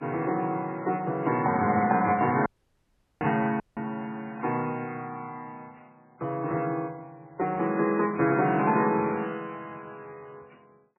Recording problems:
lossy compression; MP3, log-spectral distance 3 dB, nothing above 2.5 kHz
dropout; at 2.5 s for 1 s and at 3.5 s

